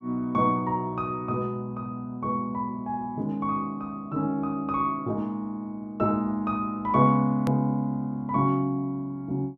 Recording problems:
edit click; at 7.5 s

